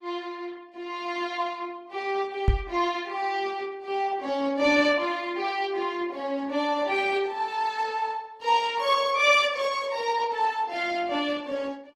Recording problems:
codec artefacts; Opus, log-spectral distance 3 dB, nothing above 18.9 kHz
knock on the microphone; at 2.5 s; peak +7 dB vs average level

